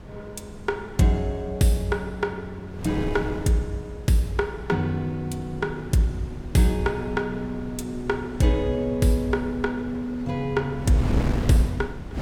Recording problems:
wind noise; below 290 Hz, SNR 10 dB

